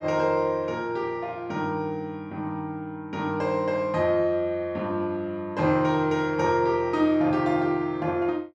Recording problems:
none

